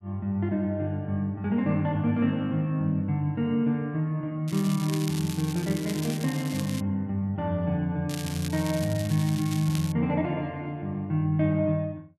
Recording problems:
crackling; from 4.5 to 7 s and from 8 to 10 s; loose cable, SNR 12 dB

